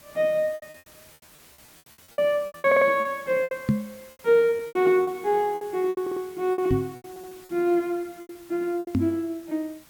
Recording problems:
hiss; slope -2 dB per octave, SNR 24 dB
packet loss; 14% of the sound replaced, filled with repeated pitch periods
audio stuttering; at 2.5 s, at 6 s and at 7 s
knock on the microphone; at 3.5 s, at 6.5 s and at 9 s; peak +6 dB vs average level

